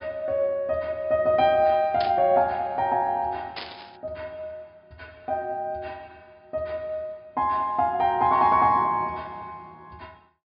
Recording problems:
treble missing; nothing above 5.5 kHz
static burst; at 2 s and at 3.5 s; peak -6 dB vs average level

